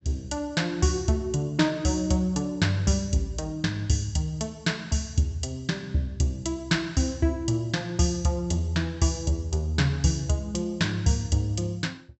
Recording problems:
treble cut off; nothing above 7.9 kHz

